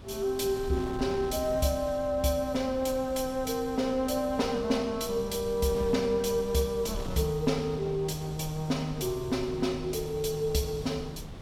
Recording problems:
wind on the microphone; below 310 Hz, SNR 13 dB

